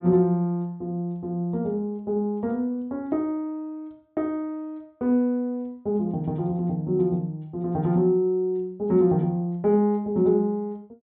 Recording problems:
low-pass filter; nothing above 4 kHz

